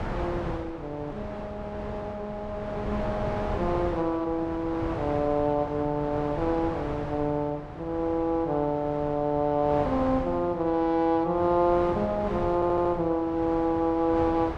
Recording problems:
wind on the microphone; below 860 Hz, SNR 9 dB
stutter; at 13 s

